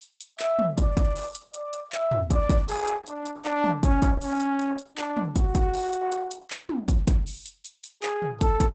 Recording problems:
codec artefacts; Opus, log-spectral distance 5 dB, nothing above 8 kHz

